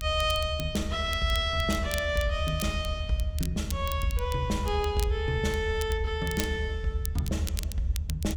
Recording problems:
low-frequency rumble; below 80 Hz, SNR 4 dB
crackling; vinyl, SNR 12 dB

